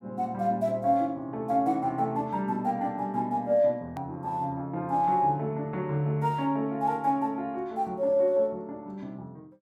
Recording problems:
hard cut with a click; at 4 s

